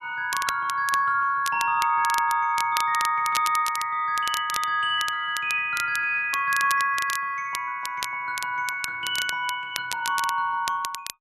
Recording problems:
crackle; vinyl, SNR 10 dB

